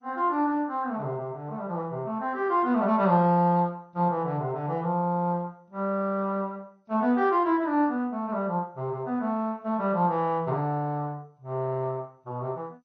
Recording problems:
lossy codec; AAC, then MP2, log-spectral distance 2 dB, nothing above 5.5 kHz

